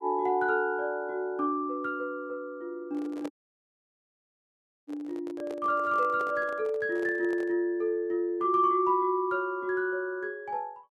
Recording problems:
microphone handling noise; from 3 to 7.5 s; peak -6 dB vs average level
audio cutting out; at 3.5 s for 1.5 s

